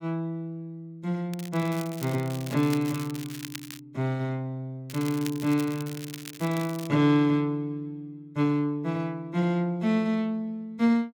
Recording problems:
crackling; from 1.5 to 4 s and from 5 to 7 s; loose cable, SNR 14 dB

